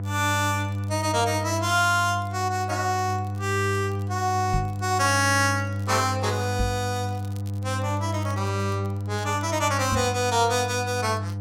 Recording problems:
electrical hum; 50 Hz, harmonics up to 700 Hz, SNR 5 dB
crackling; vinyl, SNR 28 dB
microphone bump; at 4.5 s, at 6.5 s and at 10 s; peak +1 dB vs average level

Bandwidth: 16 kHz